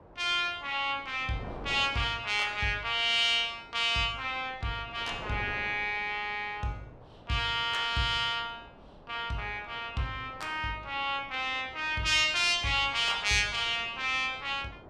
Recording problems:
wind on the microphone; below 780 Hz, SNR 21 dB

